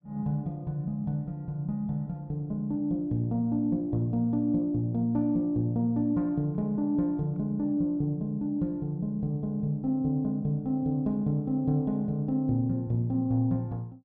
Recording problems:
none

